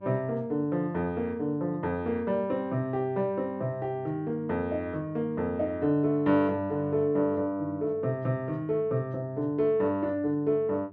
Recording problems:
mains hum; 50 Hz, harmonics up to 900 Hz, SNR 23 dB

